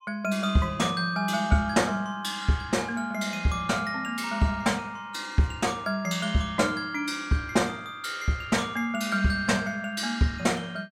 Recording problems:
none

